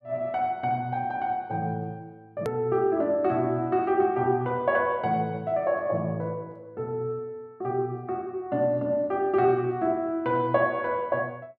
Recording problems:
edit click; at 2.5 s

